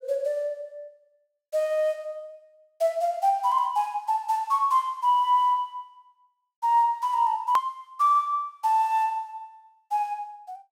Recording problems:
edit click; at 7.5 s

